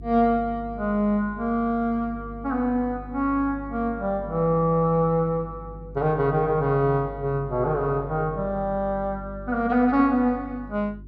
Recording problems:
electrical hum; 50 Hz, harmonics up to 400 Hz, SNR 17 dB

